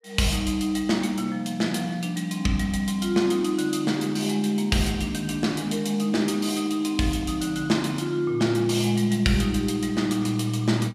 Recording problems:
none

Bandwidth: 15 kHz